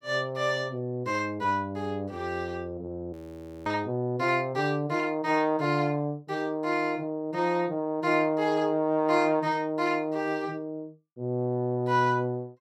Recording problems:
audio freezing; at 3 s for 0.5 s

